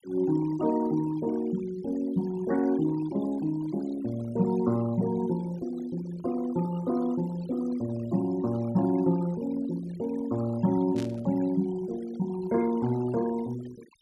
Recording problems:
denoising artefacts; signal-to-artefact ratio 19 dB
burst of static; at 11 s; peak -10 dB vs average level

